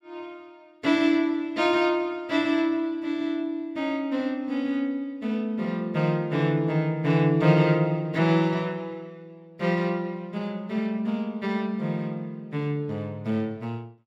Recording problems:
none

